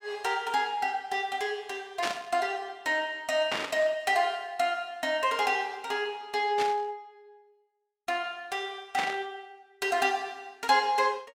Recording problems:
burst of static; 4 times, first at 2 s; peak +1 dB vs average level

